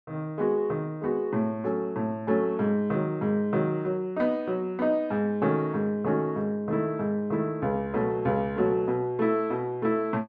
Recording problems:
none

